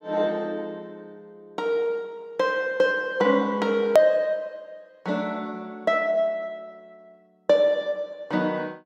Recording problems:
hard cut with a click; at 4 s

